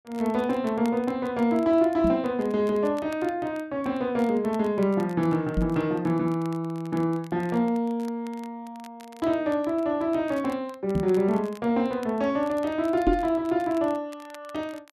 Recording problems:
crackle; vinyl, SNR 26 dB
microphone thump; 4 times, first at 2 s; peak +3 dB vs average level

